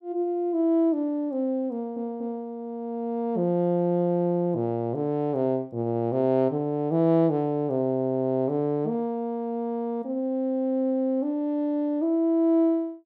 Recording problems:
stutter; at 1.5 s

